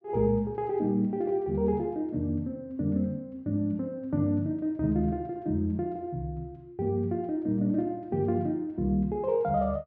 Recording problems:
none

